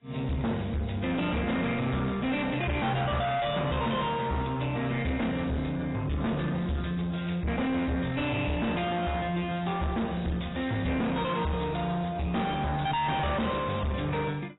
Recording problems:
codec artefacts; AAC, log-spectral distance 5 dB, nothing above 3.8 kHz
distorted audio; soft clipping, signal-to-distortion ratio 5 dB

